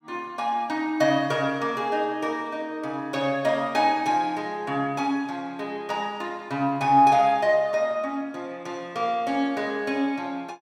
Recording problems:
none

